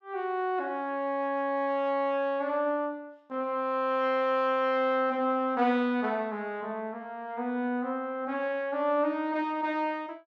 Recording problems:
none

